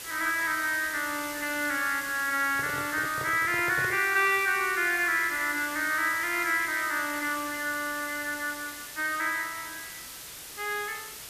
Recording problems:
background hiss; slope 0 dB per octave, SNR 11 dB
microphone handling noise; from 2.5 to 4 s; peak -7 dB vs average level

